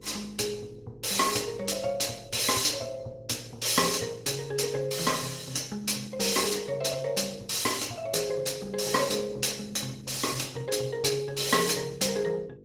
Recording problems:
lossy compression; Opus, log-spectral distance 6 dB
hum; 50 Hz, harmonics up to 600 Hz, SNR 24 dB

